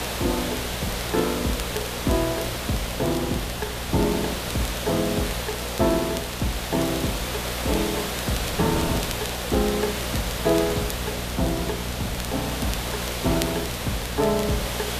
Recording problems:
hum; 60 Hz, harmonics up to 900 Hz, SNR 8 dB
background hiss; SNR 2 dB
wind on the microphone; below 380 Hz, SNR 12 dB
crackle; vinyl, SNR 14 dB

